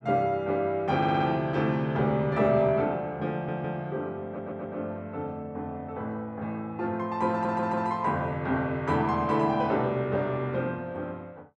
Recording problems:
stutter; 4 times, first at 1 s

